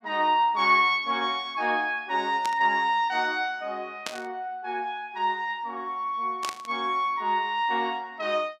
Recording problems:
burst of static; at 2.5 s, at 4 s and at 6.5 s; peak -2 dB vs average level

